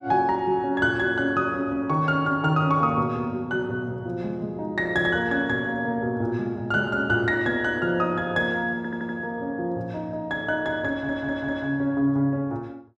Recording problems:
audio stuttering; at 9 s and at 11 s

